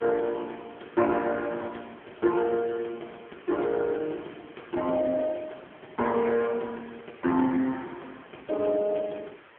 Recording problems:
telephone audio; 220 Hz to 3.7 kHz, AMR-NB
hiss; SNR 24 dB

